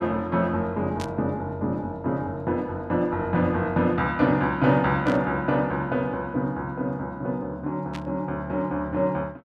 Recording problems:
burst of static; at 1 s, at 5 s and at 8 s; peak -8 dB vs average level

